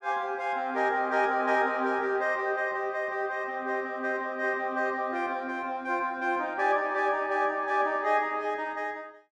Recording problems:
none

